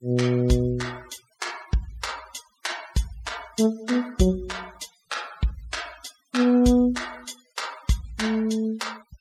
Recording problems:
noise reduction artefacts; signal-to-artefact ratio 21 dB

